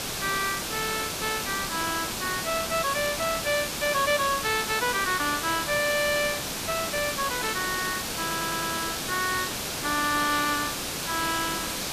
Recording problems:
background hiss; slope -2 dB per octave, SNR 2 dB
static burst; at 4 s, at 5.5 s and at 7.5 s; peak -8 dB vs average level
stutter; at 8 s

